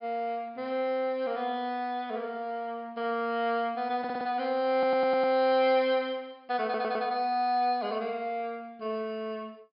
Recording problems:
treble cut off; nothing above 5.5 kHz
audio stuttering; at 4 s, at 4.5 s and at 6.5 s

